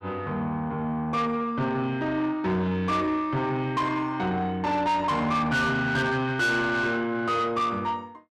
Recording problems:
distortion; soft clipping, signal-to-distortion ratio 10 dB

